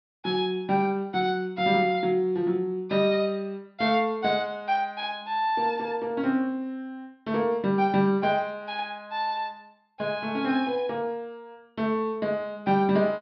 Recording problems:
treble missing; nothing above 5.5 kHz

